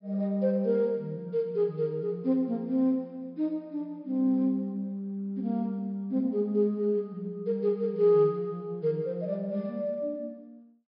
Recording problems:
treble missing; nothing above 5.5 kHz

